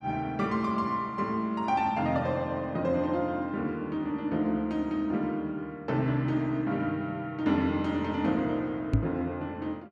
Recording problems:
knock on the microphone; at 9 s; peak +9 dB vs average level

